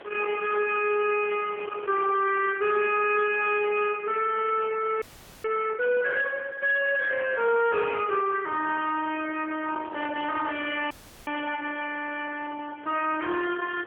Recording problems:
phone line; 320 Hz to 3.3 kHz, AMR-NB
distorted audio; soft clipping, signal-to-distortion ratio 12 dB
wind on the microphone; below 1.8 kHz, SNR 18 dB
audio freezing; at 5 s and at 11 s

